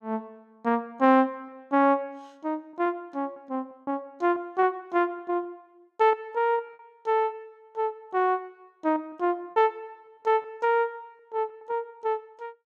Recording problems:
lost packets; 6% of the sound replaced, filled with repeated pitch periods

